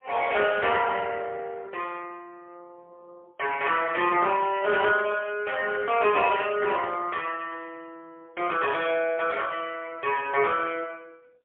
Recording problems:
telephone audio; 320 Hz to 3.3 kHz, AMR-NB, then MP3

